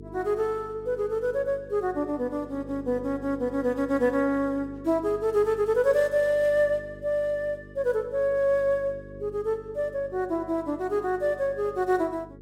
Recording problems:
hum; 50 Hz, harmonics up to 450 Hz, SNR 19 dB

